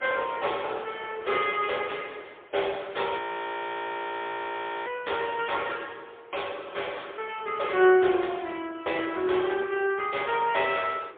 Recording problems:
phone line; 320 Hz to 3.5 kHz, AMR-NB, then MP3
wind on the microphone; below 1.4 kHz, SNR 20 dB
audio freezing; at 3 s for 1.5 s

